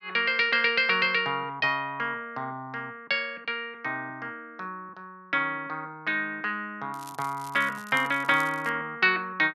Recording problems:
crackle; from 7 to 8.5 s; loose cable, SNR 21 dB

